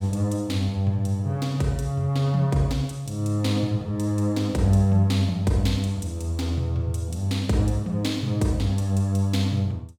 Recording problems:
none

